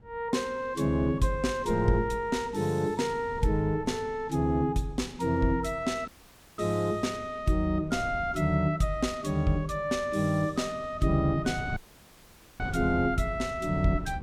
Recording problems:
wind on the microphone; below 160 Hz, SNR 16 dB
audio cutting out; at 6 s for 0.5 s and at 12 s for 1 s

